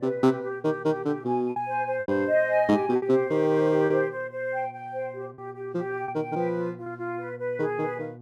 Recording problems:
electrical hum; 60 Hz, harmonics up to 840 Hz, SNR 22 dB
packet loss; 4% of the sound replaced, filled with repeated pitch periods

